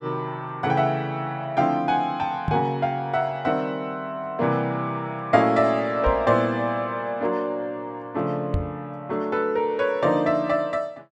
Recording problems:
microphone bump; at 2.5 s, at 6 s and at 8.5 s; peak +2 dB vs average level

